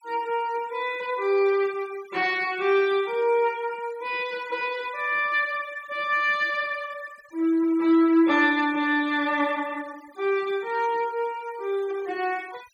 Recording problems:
noise reduction artefacts; signal-to-artefact ratio 24 dB

